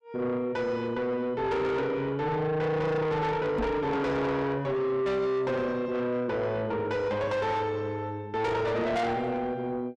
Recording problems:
distortion; soft clipping, signal-to-distortion ratio 8 dB
knock on the microphone; at 3.5 s; peak +4 dB vs average level

